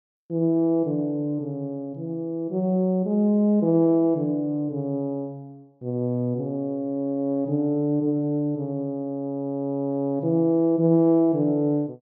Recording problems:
treble cut off; nothing above 6.9 kHz

